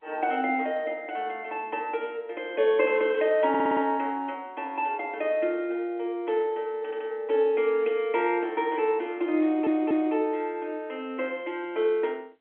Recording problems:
telephone audio; 260 Hz to 3.3 kHz, G.711
audio stuttering; at 3.5 s, at 7 s and at 9.5 s

